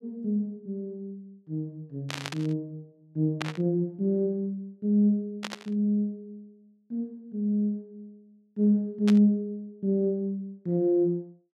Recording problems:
burst of static; 4 times, first at 2 s; peak -1 dB vs average level

